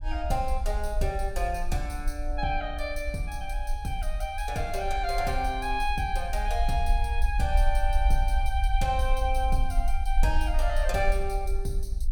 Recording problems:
rumble; below 50 Hz, SNR 0 dB

